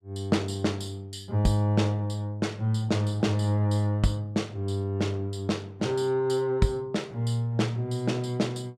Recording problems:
none

